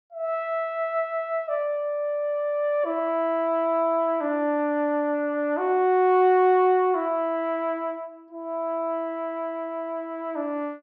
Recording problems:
none

